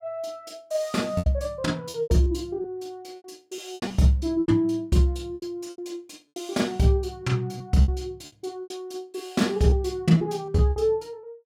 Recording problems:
lost packets; 9% of the sound replaced, filled with repeated pitch periods

